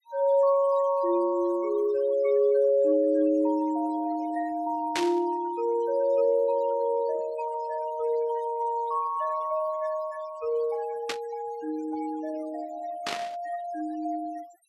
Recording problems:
denoising artefacts; signal-to-artefact ratio 23 dB
static burst; at 5 s, at 11 s and at 13 s; peak +1 dB vs average level

